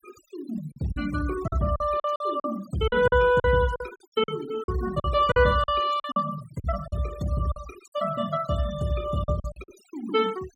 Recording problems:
noise reduction artefacts; signal-to-artefact ratio 17 dB
lost packets; 10% of the sound replaced, filled with silence

